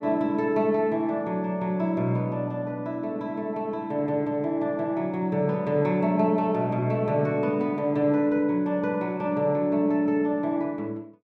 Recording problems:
none

